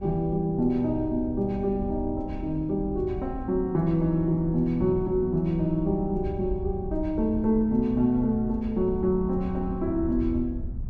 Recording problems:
wind noise; below 90 Hz, SNR 11 dB

